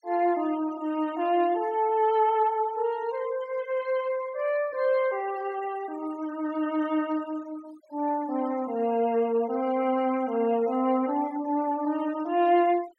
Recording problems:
denoising artefacts; signal-to-artefact ratio 21 dB

